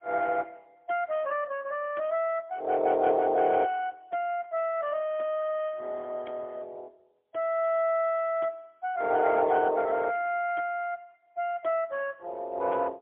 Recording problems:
phone line; 320 Hz to 3.3 kHz, AMR-NB, then MP3

